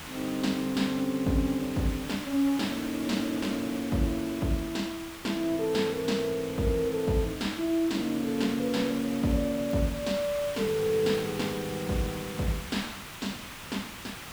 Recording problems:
hiss; SNR 11 dB
crackling; from 6.5 to 8 s and from 9.5 to 12 s; loose cable, SNR 29 dB

